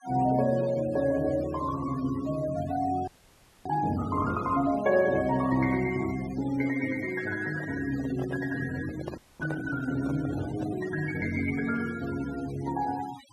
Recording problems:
noise reduction artefacts; signal-to-artefact ratio 17 dB
audio freezing; at 3 s for 0.5 s and at 9 s
handling noise; from 7.5 to 11 s; peak -5 dB vs average level

